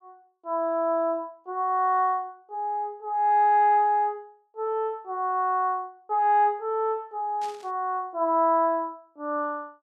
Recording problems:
burst of static; at 7.5 s; peak -15 dB vs average level

